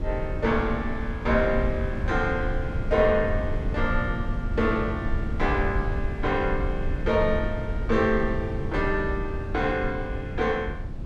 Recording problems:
low-frequency rumble; below 110 Hz, SNR 4 dB

